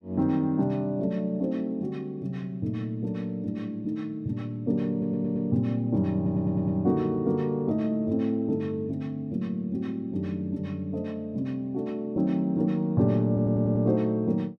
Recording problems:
audio stuttering; at 5 s, at 6 s and at 13 s

